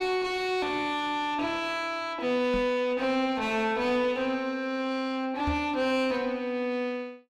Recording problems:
distorted audio; soft clipping, signal-to-distortion ratio 9 dB
microphone bump; at 2.5 s and at 5.5 s; peak +1 dB vs average level

